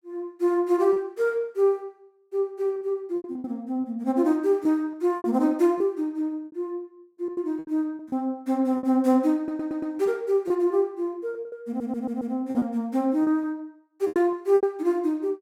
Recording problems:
lost packets; 9% of the sound replaced, filled with repeated pitch periods
audio stuttering; at 9.5 s and at 12 s

